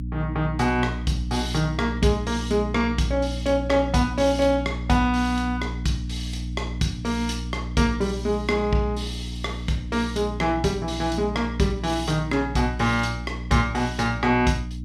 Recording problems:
hum; 60 Hz, harmonics up to 300 Hz, SNR 7 dB

